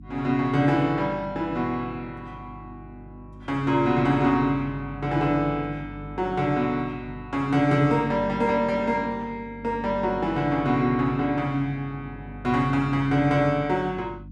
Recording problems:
electrical hum; 50 Hz, harmonics up to 300 Hz, SNR 18 dB

